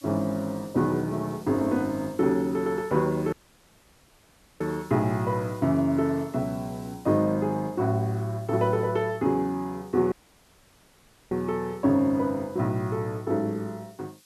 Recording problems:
hiss; slope +3 dB per octave, SNR 26 dB
dropout; at 3.5 s for 1.5 s and at 10 s for 1 s

